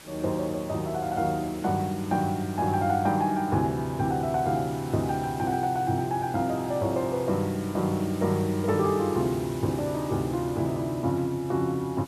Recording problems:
hiss; slope -2 dB per octave, SNR 18 dB

